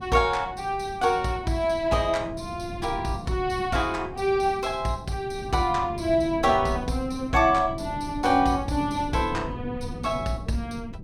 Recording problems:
wind noise; below 210 Hz, SNR 13 dB

